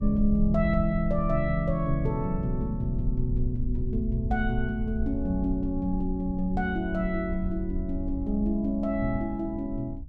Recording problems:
rumble; below 66 Hz, SNR 6 dB

